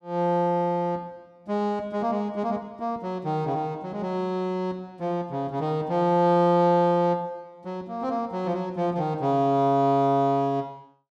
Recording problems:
none

